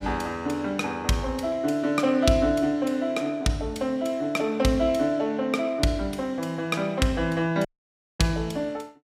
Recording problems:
audio cutting out; at 7.5 s for 0.5 s

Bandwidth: 15.5 kHz